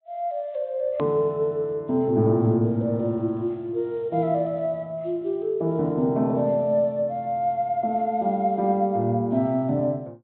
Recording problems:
treble missing; nothing above 4 kHz
click at an edit; at 1 s

